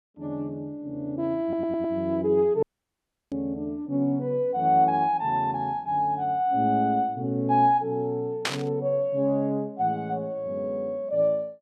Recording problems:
stutter; at 1.5 s
audio cutting out; at 2.5 s for 0.5 s
static burst; at 3.5 s and at 8.5 s; peak +3 dB vs average level

